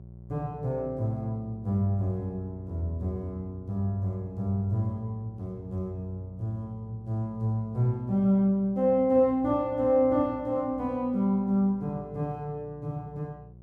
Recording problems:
hum; 60 Hz, harmonics up to 600 Hz, SNR 19 dB

